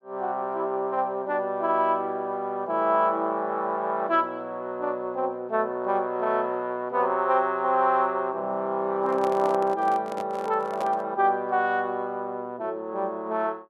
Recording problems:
microphone handling noise; from 9 to 11 s; peak -4 dB vs average level

